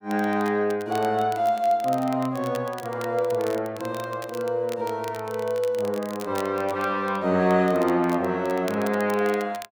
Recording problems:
crackling; vinyl, SNR 20 dB

